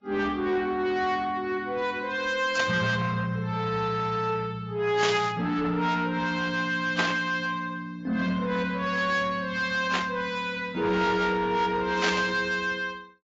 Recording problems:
lossy compression; AAC, log-spectral distance 2 dB
distorted audio; soft clipping, signal-to-distortion ratio 12 dB
static burst; 5 times, first at 2.5 s; peak +4 dB vs average level

